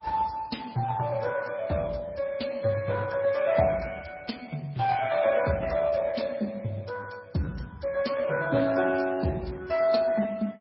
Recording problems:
lossy compression; Speex, then MP3, log-spectral distance 4 dB, nothing above 5.5 kHz

